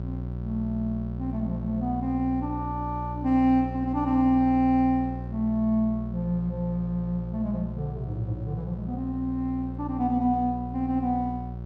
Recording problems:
hum; 60 Hz, harmonics up to 720 Hz, SNR 8 dB

